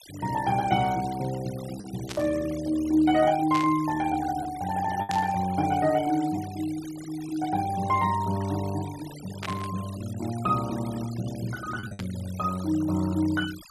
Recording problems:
denoising artefacts; signal-to-artefact ratio 17 dB
lost packets; 1.8% of the sound replaced, filled with the last packet
static burst; 5 times, first at 2 s; peak -3 dB vs average level

